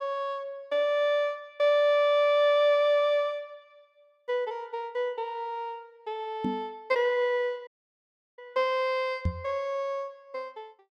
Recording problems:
knock on the microphone; at 6.5 s and at 9.5 s; peak +2 dB vs average level
dropout; at 7.5 s for 0.5 s

